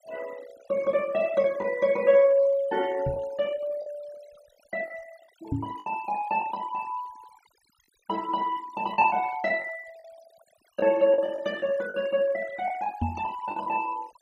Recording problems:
noise reduction artefacts; signal-to-artefact ratio 21 dB
packet loss; 5% of the sound replaced, filled with the last packet
microphone bump; at 3 s, at 5.5 s and at 13 s; peak +1 dB vs average level

